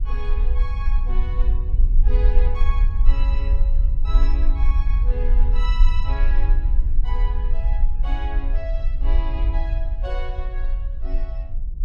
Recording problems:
rumble; below 46 Hz, SNR -13 dB

